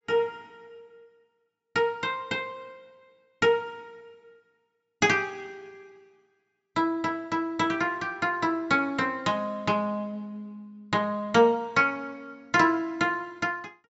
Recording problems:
treble missing; nothing above 8 kHz

